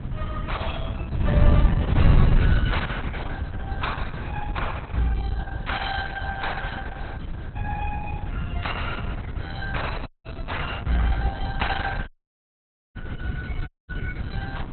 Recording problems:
lossy compression; Opus, log-spectral distance 4 dB, nothing above 4.1 kHz
wind noise; below 140 Hz, SNR -3 dB
audio cutting out; at 10 s, at 12 s for 1 s and at 14 s

